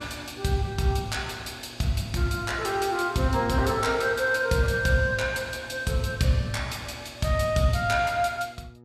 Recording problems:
hum; 60 Hz, harmonics up to 1.3 kHz, SNR 23 dB

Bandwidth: 14.5 kHz